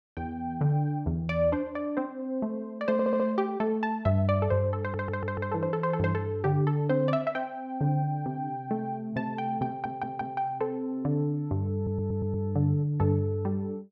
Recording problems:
audio stuttering; 4 times, first at 3 s

